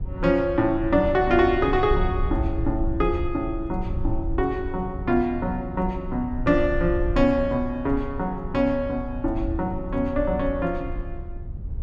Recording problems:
wind noise; below 78 Hz, SNR 8 dB

